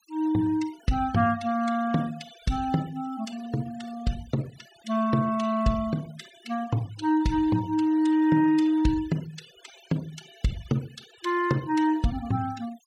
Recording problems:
denoising artefacts; signal-to-artefact ratio 21 dB

